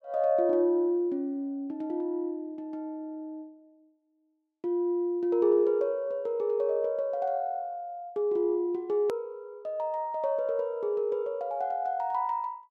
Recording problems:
click at an edit; at 9 s

